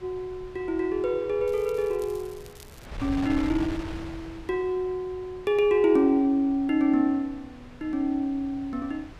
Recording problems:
wind noise; below 610 Hz, SNR 16 dB
crackle; from 1.5 to 3 s; loose cable, SNR 26 dB

